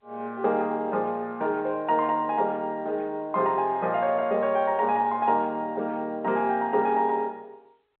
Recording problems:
telephone audio; 260 Hz to 3.4 kHz, G.711

